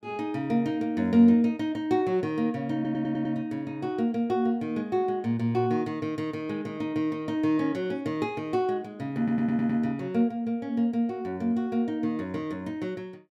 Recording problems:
audio stuttering; at 3 s and at 9 s

